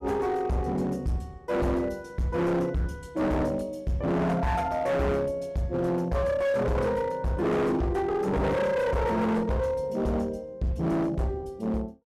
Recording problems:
distorted audio; hard clipping, signal-to-distortion ratio 7 dB

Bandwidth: 14.5 kHz